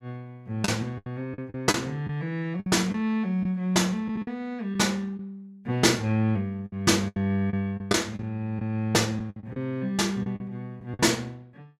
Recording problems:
packet loss; 8% of the sound replaced, filled with the last packet

